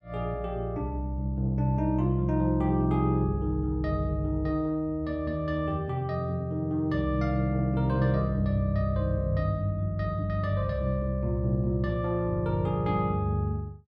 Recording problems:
none

